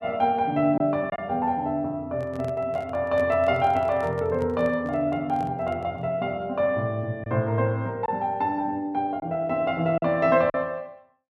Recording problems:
lost packets; 1.8% of the sound replaced, filled with silence
microphone handling noise; from 2 to 6 s; peak -10 dB vs average level

